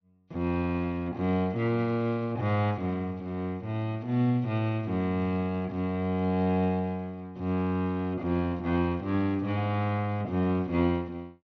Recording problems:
low-pass filter; nothing above 6.3 kHz

